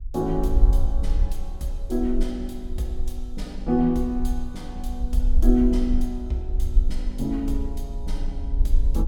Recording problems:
low-frequency rumble; below 46 Hz, SNR 0 dB

